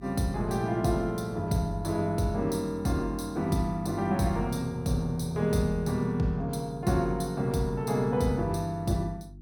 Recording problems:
hum; 50 Hz, harmonics up to 350 Hz, SNR 20 dB

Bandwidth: 17 kHz